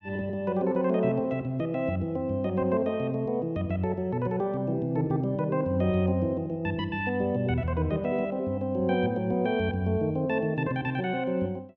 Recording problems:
none

